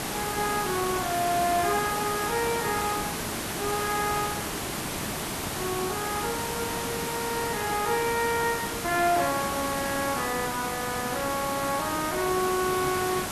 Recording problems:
hiss; slope -4 dB per octave, SNR 2 dB

